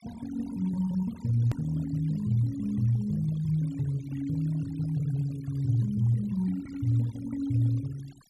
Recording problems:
noise reduction artefacts; signal-to-artefact ratio 23 dB
edit click; at 1.5 s

